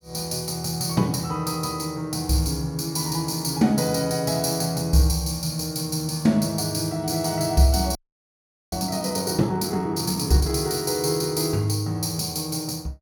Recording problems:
frozen audio; at 8 s for 1 s

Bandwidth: 17.5 kHz